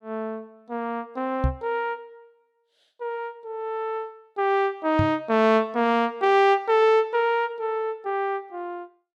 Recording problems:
knock on the microphone; at 1.5 s and at 5 s; peak +4 dB vs average level

